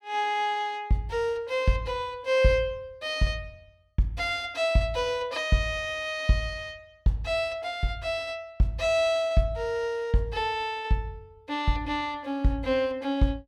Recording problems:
none

